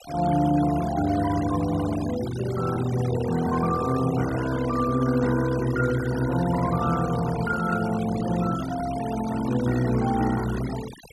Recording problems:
noise reduction artefacts; signal-to-artefact ratio 14 dB

